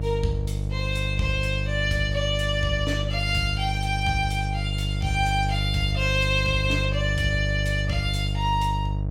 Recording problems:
electrical hum; 50 Hz, harmonics up to 650 Hz, SNR 1 dB

